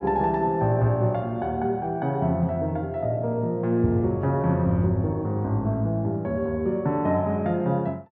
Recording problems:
none

